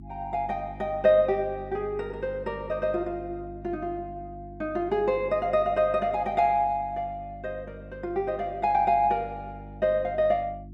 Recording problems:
hum; 50 Hz, harmonics up to 350 Hz, SNR 17 dB

